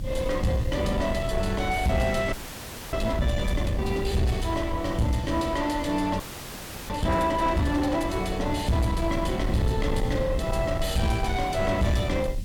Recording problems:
distortion; soft clipping, signal-to-distortion ratio 12 dB
background hiss; SNR 24 dB
rumble; below 110 Hz, SNR 7 dB
wind noise; below 270 Hz, SNR 16 dB
frozen audio; at 2.5 s for 0.5 s and at 6 s for 0.5 s

